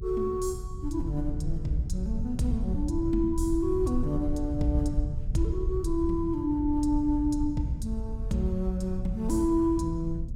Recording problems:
rumble; below 80 Hz, SNR 5 dB

